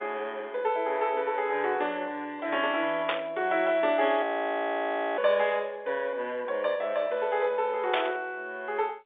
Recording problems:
phone line; 320 Hz to 3.6 kHz, G.711
static burst; at 3 s and at 8 s; peak +3 dB vs average level
audio freezing; at 4 s for 1 s

